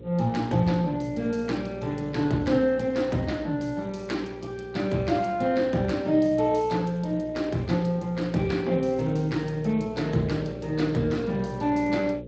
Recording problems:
lossy codec; Speex, log-spectral distance 4 dB
mains hum; 60 Hz, harmonics up to 540 Hz, SNR 14 dB

